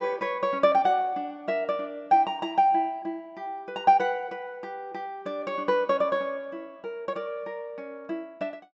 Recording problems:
treble missing; nothing above 8 kHz

